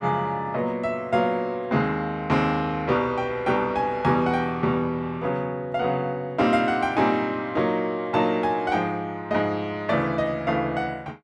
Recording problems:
none

